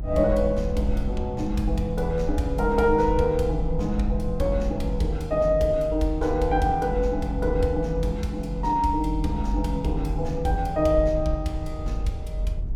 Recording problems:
low-frequency rumble; below 58 Hz, strongest tone 46 Hz, SNR 6 dB

